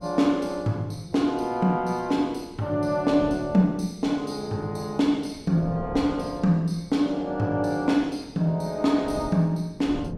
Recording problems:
wind on the microphone; below 270 Hz, SNR 18 dB

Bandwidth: 16.5 kHz